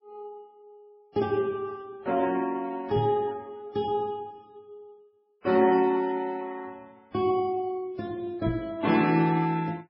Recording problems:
lossy codec; MP3, then Vorbis, log-spectral distance 2 dB, nothing above 5.3 kHz
microphone thump; at 3 s and at 8.5 s; peak +1 dB vs average level

